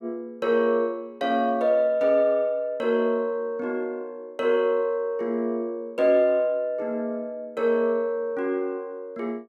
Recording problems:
none

